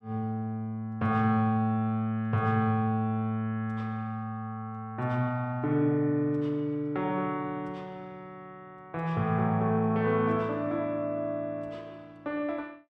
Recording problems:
none

